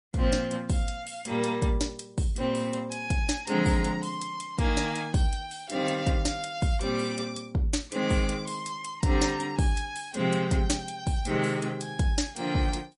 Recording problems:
codec artefacts; MP3, log-spectral distance 4 dB, nothing above 10.4 kHz

